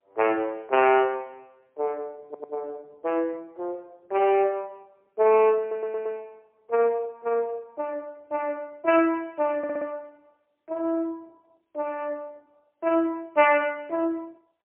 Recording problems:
phone line; 300 Hz to 3 kHz, AMR-NB, then MP3
audio stuttering; at 2.5 s, at 5.5 s and at 9.5 s

